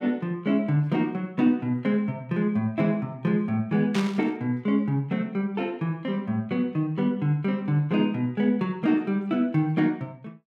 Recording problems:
static burst; at 4 s; peak -4 dB vs average level

